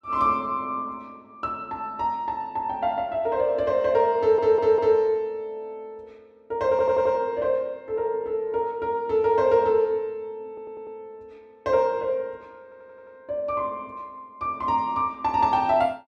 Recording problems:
audio stuttering; 4 times, first at 4 s

